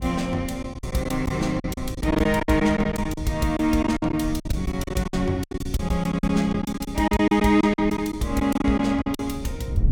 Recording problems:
wind noise; below 110 Hz, SNR 12 dB
lost packets; 14% of the sound replaced, filled with silence

